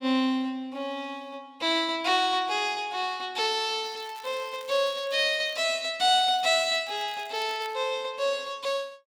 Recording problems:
crackling; from 4 to 5.5 s and from 6 to 7.5 s; loose cable, SNR 25 dB

